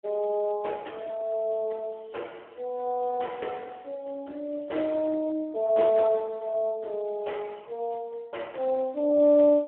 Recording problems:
telephone audio; 260 Hz to 3.3 kHz, Speex

